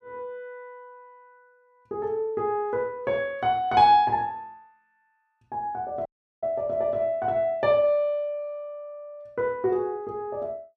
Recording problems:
dropout; at 6 s

